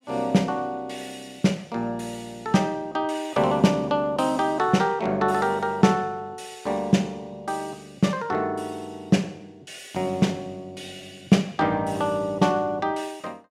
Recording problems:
none

